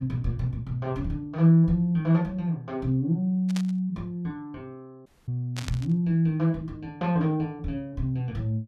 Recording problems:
static burst; at 3.5 s and at 5.5 s; peak -6 dB vs average level
audio cutting out; at 5 s

